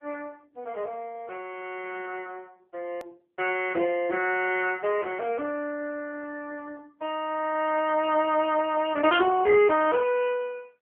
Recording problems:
phone line; 240 Hz to 3.3 kHz, AMR-NB
click at an edit; at 3 s

